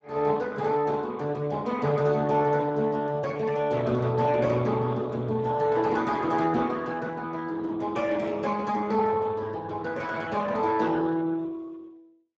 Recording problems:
codec artefacts; Speex, log-spectral distance 3 dB

